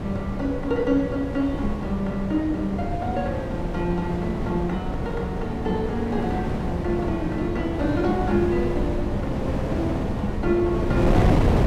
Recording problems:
wind on the microphone; below 380 Hz, SNR 1 dB

